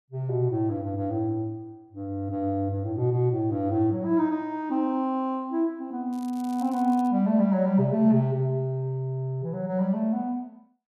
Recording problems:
crackle; at 6 s; loose cable, SNR 26 dB

